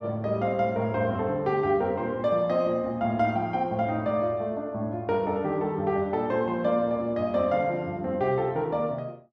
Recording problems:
none

